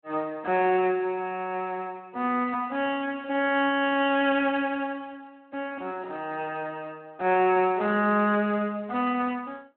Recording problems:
telephone audio; 220 Hz to 3.3 kHz, Speex

